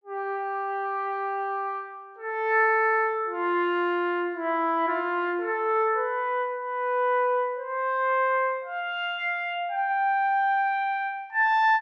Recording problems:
none

